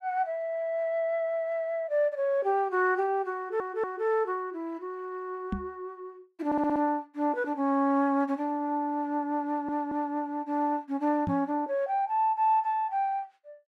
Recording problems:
stutter; at 3.5 s, at 6.5 s and at 9.5 s
knock on the microphone; at 5.5 s and at 11 s; peak +1 dB vs average level

